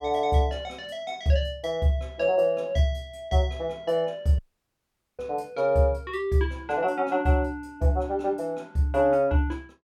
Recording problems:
dropout; at 4.5 s for 1 s

